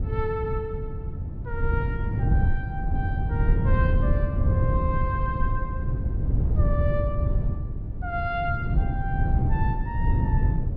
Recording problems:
treble cut off; nothing above 5.5 kHz
wind noise; below 120 Hz, SNR -7 dB

